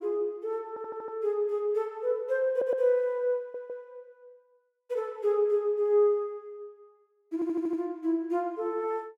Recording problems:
audio stuttering; 4 times, first at 0.5 s

